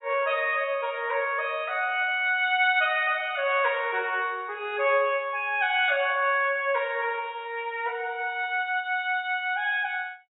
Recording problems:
treble missing; nothing above 4 kHz

